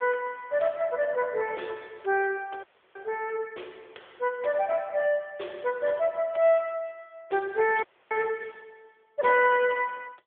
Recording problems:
phone line; 300 Hz to 3.4 kHz, AMR-NB
frozen audio; at 2.5 s and at 8 s

